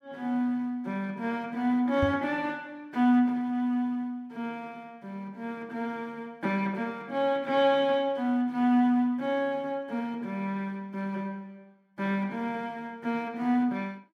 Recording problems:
knock on the microphone; at 2 s; peak +2 dB vs average level

